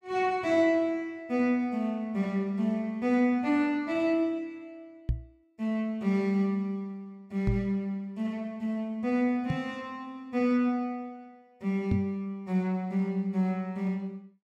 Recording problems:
knock on the microphone; 4 times, first at 5 s; peak +4 dB vs average level

